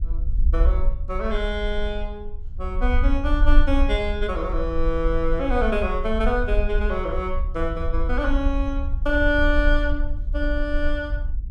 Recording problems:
wind on the microphone; below 52 Hz, SNR 1 dB

